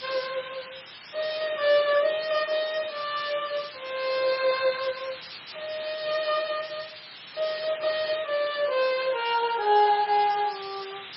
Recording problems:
lossy codec; MP3, then MP2, log-spectral distance 18 dB, nothing above 4.6 kHz
hiss; SNR 13 dB

